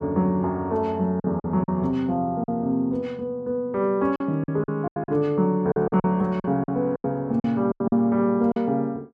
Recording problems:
packet loss; 10% of the sound replaced, filled with silence

